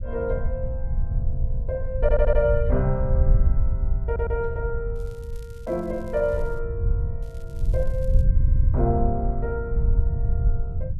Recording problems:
rumble; below 76 Hz, SNR -2 dB
stutter; at 2 s, at 4 s and at 8.5 s
crackle; from 5 to 6.5 s and from 7 to 8 s; loose cable, SNR 29 dB

